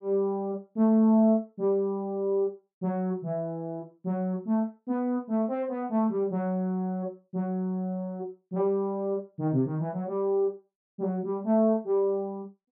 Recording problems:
none

